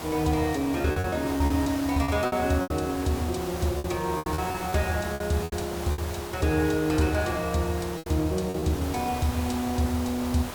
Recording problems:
background hiss; SNR 10 dB
lost packets; 9% of the sound replaced, filled with repeated pitch periods

